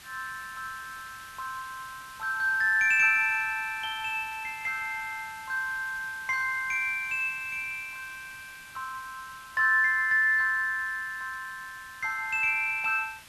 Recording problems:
hiss; SNR 21 dB

